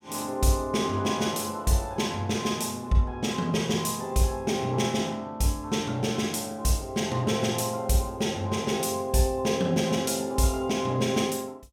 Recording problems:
none

